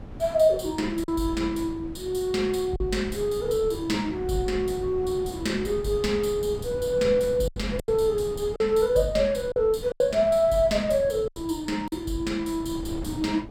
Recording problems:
wind noise; below 280 Hz, SNR 15 dB
packet loss; 4% of the sound replaced, filled with silence

